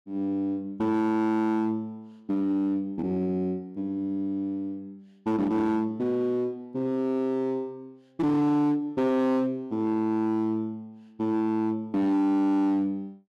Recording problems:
distorted audio; hard clipping, signal-to-distortion ratio 12 dB

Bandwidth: 14 kHz